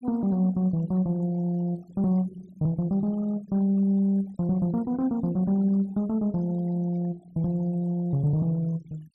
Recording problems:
denoising artefacts; signal-to-artefact ratio 24 dB

